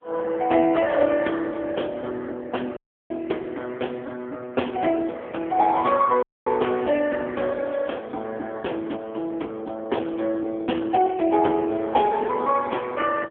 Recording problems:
phone line; 260 Hz to 3.4 kHz, AMR-NB
audio cutting out; at 3 s and at 6 s

